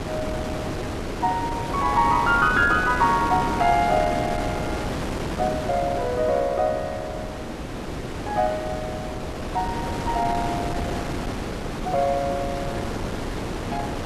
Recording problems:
wind on the microphone; below 860 Hz, SNR 5 dB

